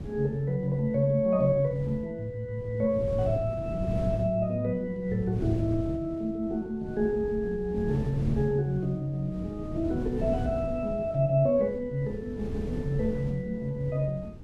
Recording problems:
wind on the microphone; below 210 Hz, SNR 9 dB

